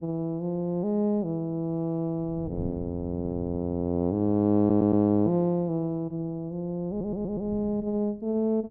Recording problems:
wind on the microphone; below 210 Hz, SNR 18 dB
audio stuttering; at 4.5 s and at 7 s

